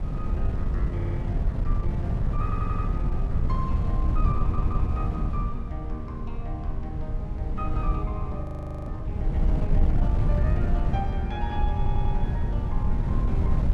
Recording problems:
wind on the microphone; below 100 Hz, SNR -9 dB
stutter; 4 times, first at 1 s
frozen audio; at 8.5 s

